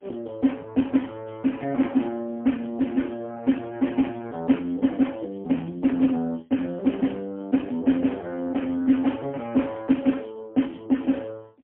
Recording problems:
phone line; 170 Hz to 3.3 kHz, AMR-NB, then MP3

